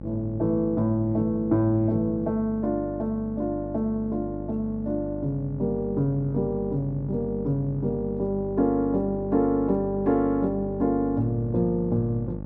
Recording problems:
electrical hum; 50 Hz, harmonics up to 900 Hz, SNR 10 dB

